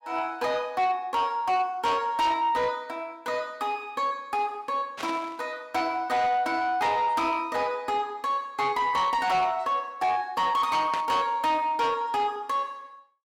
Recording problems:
distorted audio; soft clipping, signal-to-distortion ratio 11 dB
static burst; at 5 s and at 11 s; peak -3 dB vs average level

